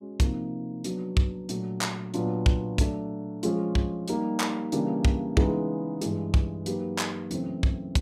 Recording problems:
none

